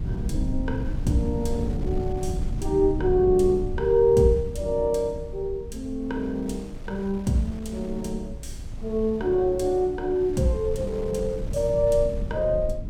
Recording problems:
rumble; below 120 Hz, SNR 9 dB
wind noise; below 470 Hz, SNR 20 dB

